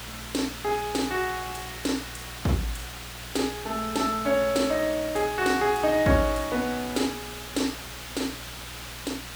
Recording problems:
hum; 60 Hz, harmonics up to 720 Hz, SNR 18 dB
hiss; SNR 10 dB

